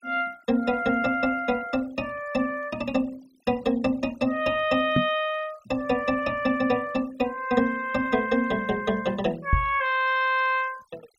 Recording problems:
noise reduction artefacts; signal-to-artefact ratio 24 dB
microphone thump; at 5 s and at 9.5 s; peak +7 dB vs average level

